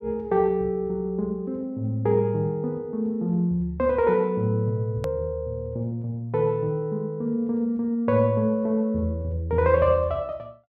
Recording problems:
click at an edit; at 5 s

